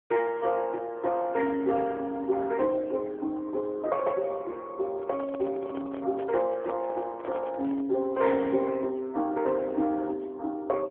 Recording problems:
telephone audio; 240 Hz to 2.3 kHz, AMR-NB
handling noise; from 5 to 8 s; peak -5 dB vs average level

